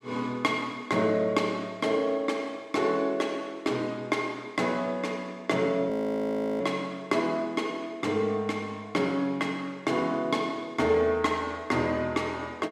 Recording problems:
audio freezing; at 6 s for 0.5 s

